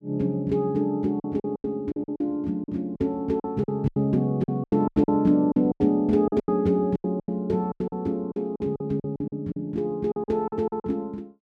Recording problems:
lost packets; 16% of the sound replaced, filled with silence

